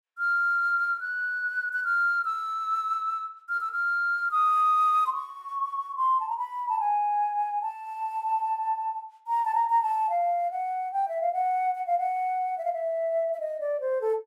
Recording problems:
none

